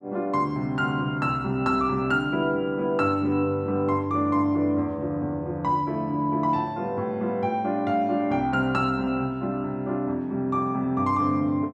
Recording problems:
none

